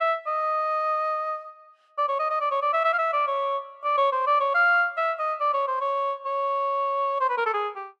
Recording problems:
none

